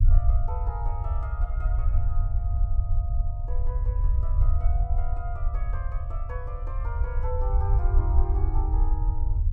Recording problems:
rumble; below 68 Hz, SNR -13 dB

